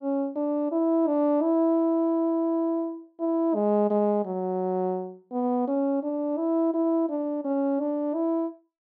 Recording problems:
none

